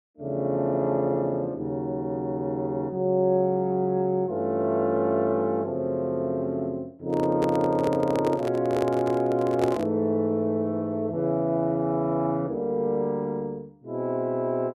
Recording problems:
handling noise; from 7 to 10 s; peak +1 dB vs average level

